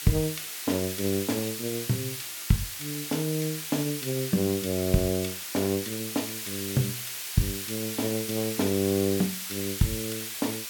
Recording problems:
background hiss; SNR 4 dB

